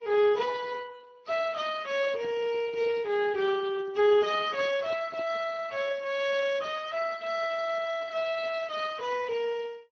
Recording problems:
lossy codec; Vorbis, then Speex, log-spectral distance 4 dB
handling noise; from 2 to 5.5 s; peak -14 dB vs average level

